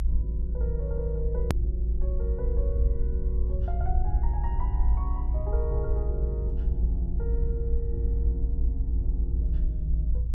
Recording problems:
rumble; below 58 Hz, strongest tone 56 Hz, SNR -10 dB
click at an edit; at 1.5 s

